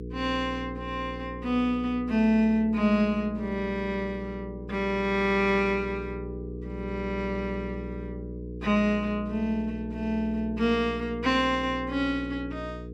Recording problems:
hum; 60 Hz, harmonics up to 480 Hz, SNR 11 dB

